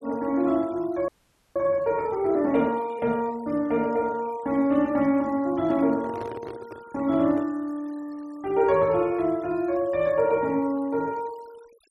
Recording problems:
denoising artefacts; signal-to-artefact ratio 27 dB
audio freezing; at 1 s
microphone handling noise; from 5.5 to 7.5 s; peak -8 dB vs average level

